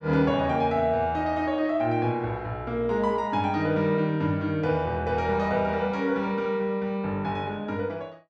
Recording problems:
none

